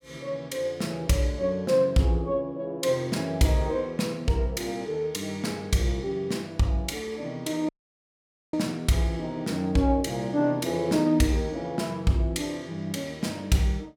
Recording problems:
audio cutting out; at 7.5 s for 1 s

